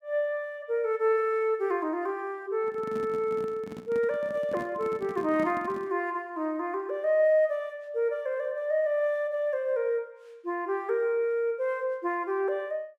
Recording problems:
handling noise; from 2.5 to 6 s; peak -6 dB vs average level

